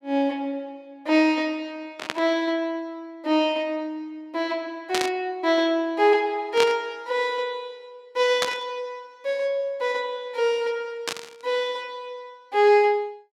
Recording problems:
static burst; 5 times, first at 2 s; peak +3 dB vs average level

